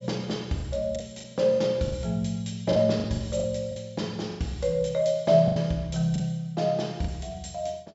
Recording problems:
low-pass filter; nothing above 8 kHz
lost packets; 9% of the sound replaced, filled with the last packet

